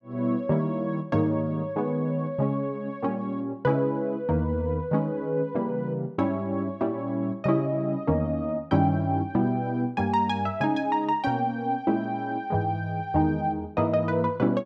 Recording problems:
none

